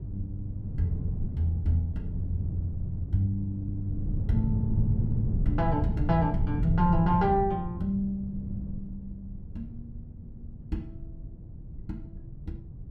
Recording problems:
low-frequency rumble; below 140 Hz, SNR 3 dB

